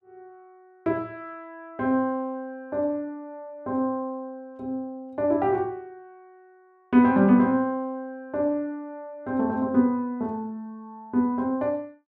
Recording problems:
none

